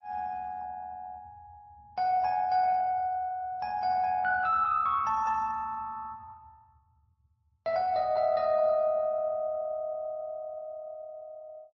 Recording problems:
lossy compression; MP3, then Opus, log-spectral distance 2 dB

